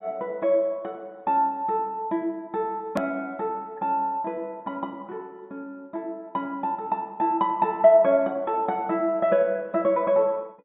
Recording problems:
low-pass filter; nothing above 4 kHz
hard cut with a click; at 3 s

